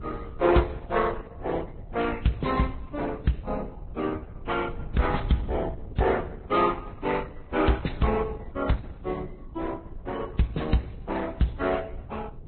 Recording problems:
codec artefacts; Opus, then Vorbis, log-spectral distance 3 dB, nothing above 4.1 kHz
wind on the microphone; below 110 Hz, SNR 13 dB

